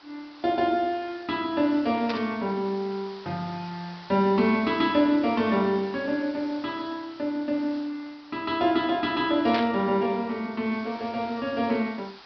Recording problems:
treble cut off; nothing above 5.5 kHz
hiss; SNR 21 dB
burst of static; at 2 s and at 9.5 s; peak -1 dB vs average level

